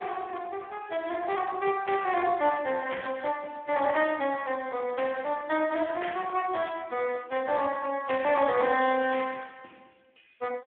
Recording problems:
phone line; 280 Hz to 3.3 kHz, Speex

